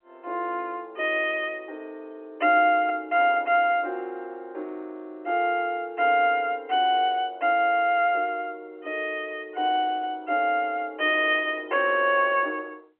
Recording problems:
telephone audio; 280 Hz to 3.3 kHz, G.711

